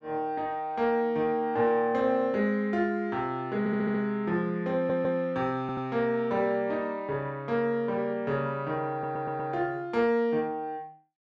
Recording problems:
audio stuttering; 4 times, first at 3.5 s

